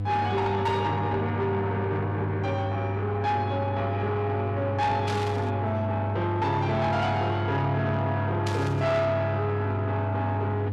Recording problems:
distortion; soft clipping, signal-to-distortion ratio 11 dB
electrical hum; 50 Hz, harmonics up to 500 Hz, SNR 3 dB
static burst; at 5 s and at 8.5 s; peak -4 dB vs average level

